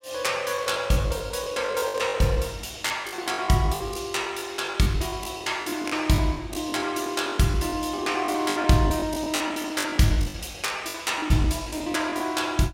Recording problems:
lost packets; 17% of the sound replaced, filled with the last packet

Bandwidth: 16 kHz